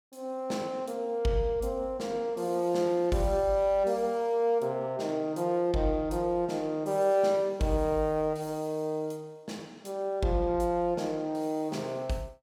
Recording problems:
none

